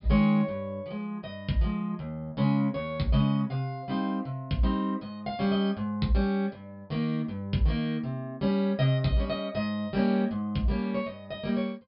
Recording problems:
treble missing; nothing above 5.5 kHz

